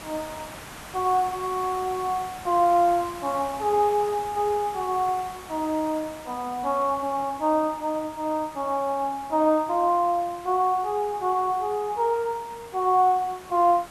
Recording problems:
background hiss; SNR 17 dB

